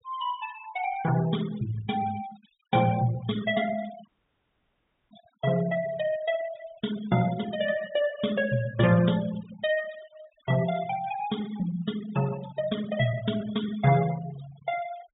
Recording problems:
treble missing; nothing above 4 kHz
denoising artefacts; signal-to-artefact ratio 15 dB
dropout; at 4 s for 1 s

